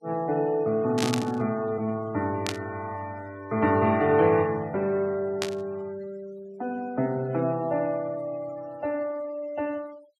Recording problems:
denoising artefacts; signal-to-artefact ratio 24 dB
static burst; at 1 s, at 2.5 s and at 5.5 s; peak +2 dB vs average level

